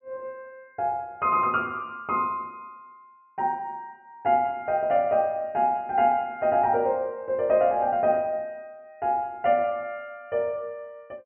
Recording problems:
treble cut off; nothing above 3.1 kHz

